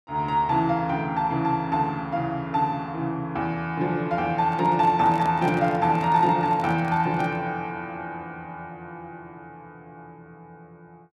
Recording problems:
handling noise; from 4.5 to 7.5 s; peak -6 dB vs average level

